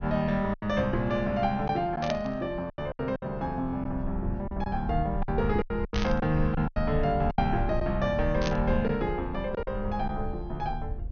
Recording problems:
treble cut off; nothing above 6.4 kHz
rumble; below 76 Hz, SNR 8 dB
lost packets; 8% of the sound replaced, filled with silence
burst of static; at 2 s, at 6 s and at 8.5 s; peak -1 dB vs average level

